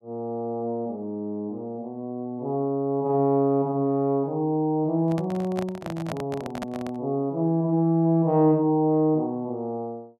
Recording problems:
microphone handling noise; from 5 to 7 s; peak -4 dB vs average level

